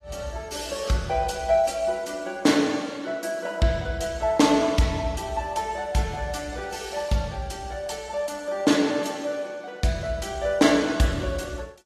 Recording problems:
lossy codec; AAC, log-spectral distance 3 dB

